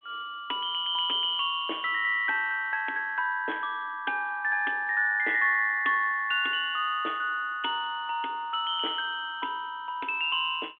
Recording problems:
telephone audio; 240 Hz to 3.5 kHz, G.726

